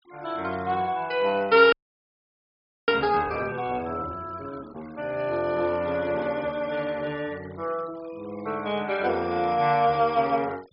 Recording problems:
treble missing; nothing above 5.5 kHz
denoising artefacts; signal-to-artefact ratio 25 dB
audio freezing; at 1.5 s for 1 s
static burst; at 3 s and at 10 s; peak -17 dB vs average level

